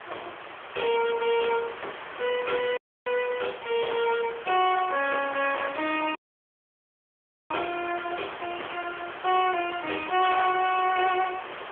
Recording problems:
phone line; 320 Hz to 3.3 kHz, AMR-NB
distorted audio; hard clipping, signal-to-distortion ratio 10 dB
background hiss; SNR 12 dB
audio cutting out; at 3 s and at 6 s for 1.5 s

